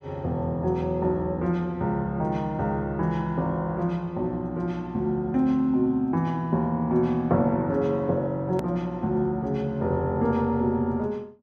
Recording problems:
click at an edit; at 8.5 s

